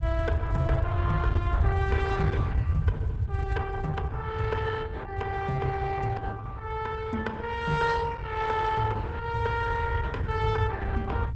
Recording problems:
lossy compression; Opus, log-spectral distance 3 dB, nothing above 8 kHz
rumble; below 100 Hz, SNR -1 dB

